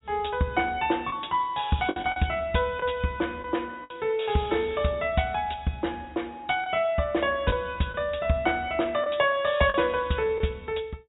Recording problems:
treble cut off; nothing above 4 kHz
lost packets; 3% of the sound replaced, filled with the last packet

